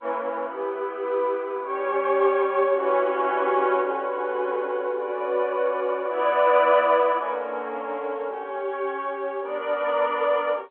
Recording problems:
telephone audio; 300 Hz to 3.3 kHz, G.711

